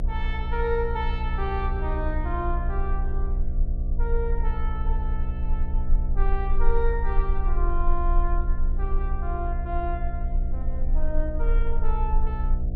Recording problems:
hum; 60 Hz, harmonics up to 720 Hz, SNR 1 dB
rumble; below 32 Hz, strongest tone 30 Hz, SNR -3 dB

